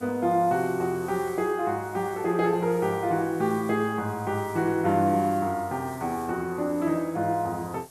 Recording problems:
background hiss; SNR 22 dB

